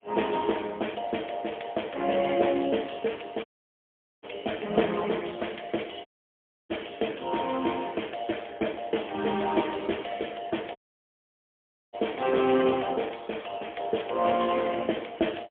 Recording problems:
phone line; 220 Hz to 3.4 kHz, AMR-NB, then MP3
audio cutting out; at 3.5 s for 1 s, at 6 s for 0.5 s and at 11 s for 1 s

